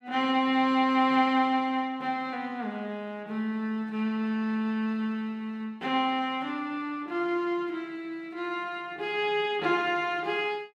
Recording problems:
none

